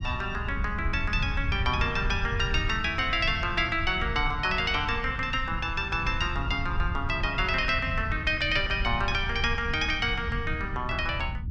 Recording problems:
low-frequency rumble; below 100 Hz, SNR 7 dB

